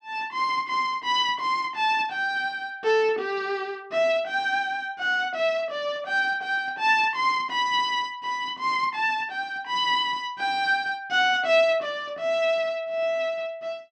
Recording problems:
none

